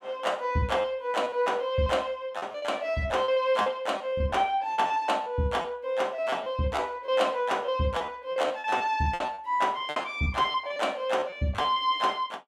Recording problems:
packet loss; 12% of the sound replaced, filled with repeated pitch periods

